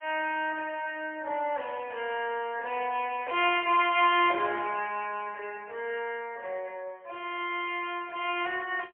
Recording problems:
telephone audio; 370 Hz to 3.4 kHz, AMR-NB, then MP3

